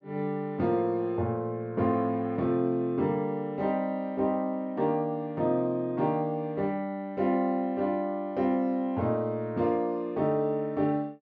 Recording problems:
treble cut off; nothing above 8 kHz

